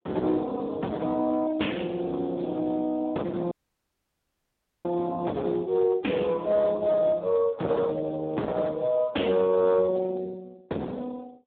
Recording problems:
telephone audio; 220 Hz to 3.7 kHz, Speex
distorted audio; hard clipping, uneven, signal-to-distortion ratio 7 dB
dropout; at 3.5 s for 1.5 s

